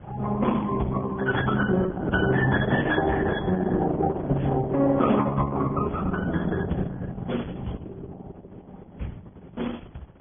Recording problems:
treble cut off; nothing above 3.4 kHz
lossy compression; Opus, then Vorbis, log-spectral distance 3 dB
wind noise; below 340 Hz, SNR 19 dB

